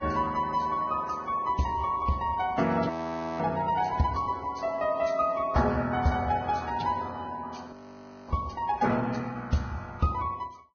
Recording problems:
codec artefacts; Vorbis, log-spectral distance 3 dB, nothing above 6.3 kHz
audio freezing; at 3 s for 0.5 s and at 7.5 s for 0.5 s

